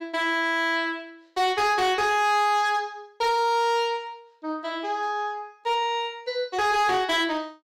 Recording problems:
distortion; hard clipping, signal-to-distortion ratio 10 dB

